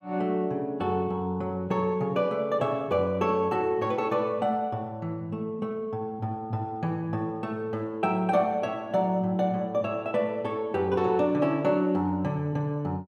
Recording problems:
none

